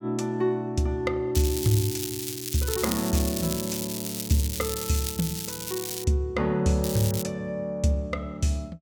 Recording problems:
crackle; from 1.5 to 6 s and at 7 s; loose cable, SNR 5 dB

